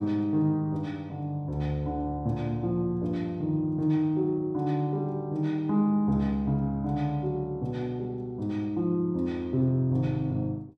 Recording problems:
none

